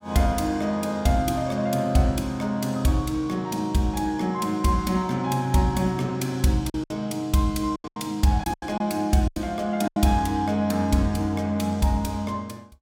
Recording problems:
lost packets; 4% of the sound replaced, filled with silence

